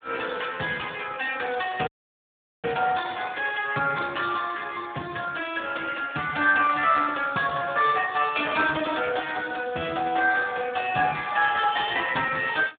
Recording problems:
telephone audio; 170 Hz to 3.5 kHz, Speex
audio cutting out; at 2 s for 1 s

